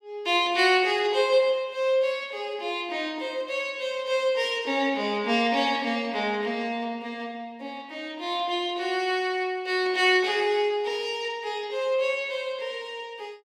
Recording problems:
none

